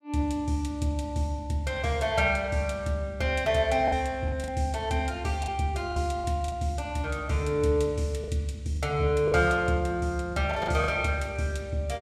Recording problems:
packet loss; 5% of the sound replaced, filled with the last packet

